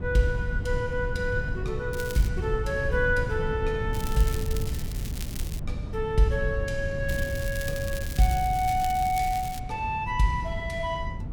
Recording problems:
rumble; below 120 Hz, SNR 5 dB
crackling; at 2 s, from 4 to 5.5 s and from 7 to 9.5 s; loose cable, SNR 12 dB

